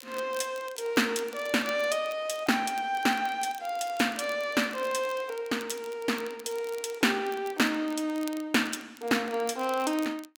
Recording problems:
crackle; vinyl, SNR 20 dB

